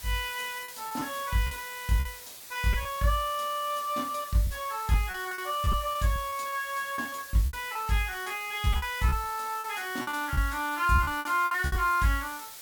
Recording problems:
background hiss; slope +1 dB per octave, SNR 13 dB
packet loss; 11% of the sound replaced, filled with repeated pitch periods

